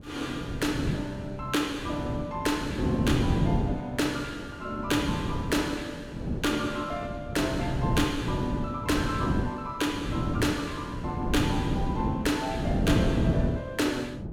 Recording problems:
wind noise; below 280 Hz, SNR 1 dB

